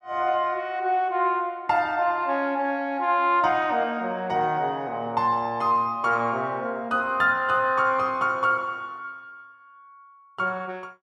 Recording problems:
none

